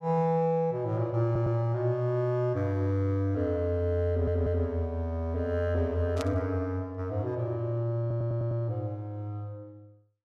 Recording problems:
audio stuttering; at 1.5 s, at 4 s and at 8 s
burst of static; at 6 s; peak -6 dB vs average level

